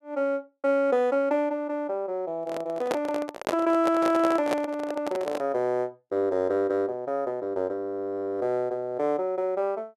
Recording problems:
handling noise; from 2.5 to 5.5 s; peak +3 dB vs average level

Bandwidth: 13 kHz